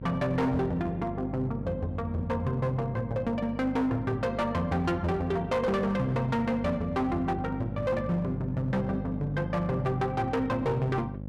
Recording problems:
distortion; hard clipping, uneven, signal-to-distortion ratio 10 dB
mains hum; 50 Hz, harmonics up to 800 Hz, SNR 9 dB

